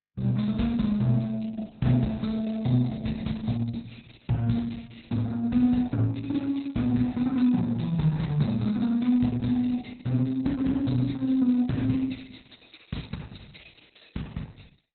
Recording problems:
codec artefacts; Opus, log-spectral distance 6 dB, nothing above 4.1 kHz

